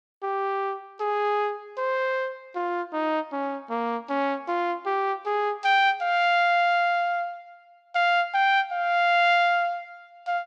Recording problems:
none

